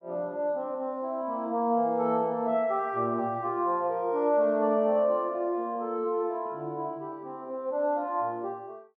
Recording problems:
none

